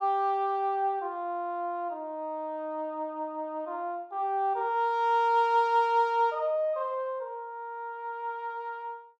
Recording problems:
none

